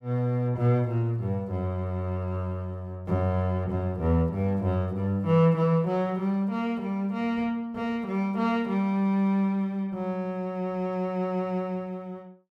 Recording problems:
none

